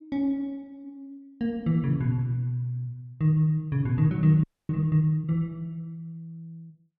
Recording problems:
audio freezing; at 4.5 s

